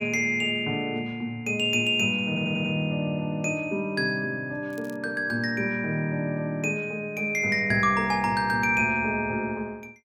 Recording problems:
stutter; at 2.5 s
crackling; at 4.5 s; loose cable, SNR 27 dB

